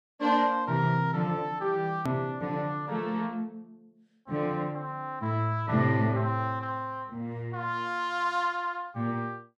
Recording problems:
click at an edit; at 2 s

